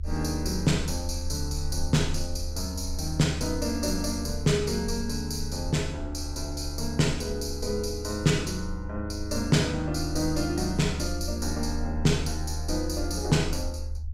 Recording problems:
low-frequency rumble; below 76 Hz, SNR 7 dB

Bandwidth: 16 kHz